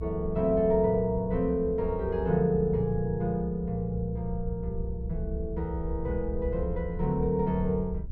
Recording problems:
low-frequency rumble; below 68 Hz, SNR 9 dB

